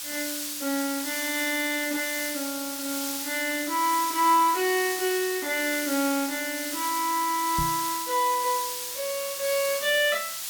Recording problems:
background hiss; slope +4 dB per octave, SNR 4 dB
microphone thump; at 7.5 s; peak -2 dB vs average level

